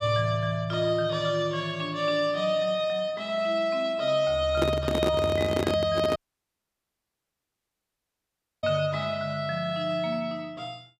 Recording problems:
handling noise; from 4.5 to 6 s; peak +5 dB vs average level
audio cutting out; at 6 s for 2.5 s

